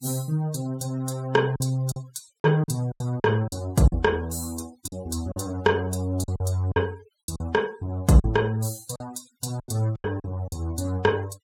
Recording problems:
noise reduction artefacts; signal-to-artefact ratio 23 dB
lost packets; 9% of the sound replaced, filled with silence

